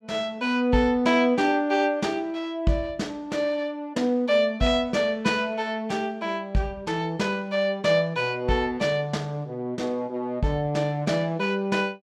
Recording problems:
none

